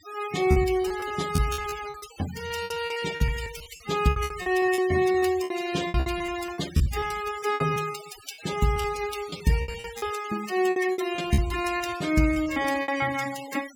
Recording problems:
denoising artefacts; signal-to-artefact ratio 12 dB
lost packets; 17% of the sound replaced, filled with repeated pitch periods

